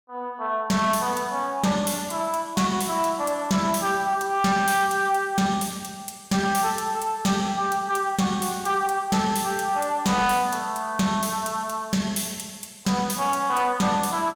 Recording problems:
distorted audio; soft clipping, signal-to-distortion ratio 12 dB

